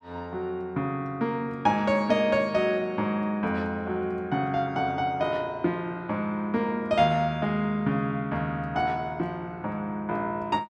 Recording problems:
none

